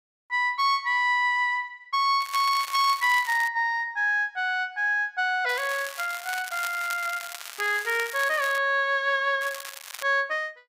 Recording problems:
crackling; from 2 to 3.5 s, from 5.5 to 8.5 s and at 9.5 s; loose cable, SNR 13 dB

